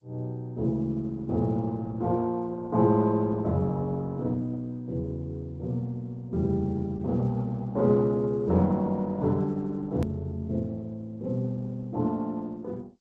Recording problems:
codec artefacts; G.722, then Opus, log-spectral distance 2 dB, nothing above 13.1 kHz
edit click; at 10 s

